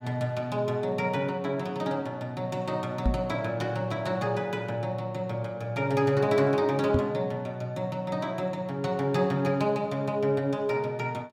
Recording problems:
microphone thump; at 3 s and at 7 s; peak +6 dB vs average level

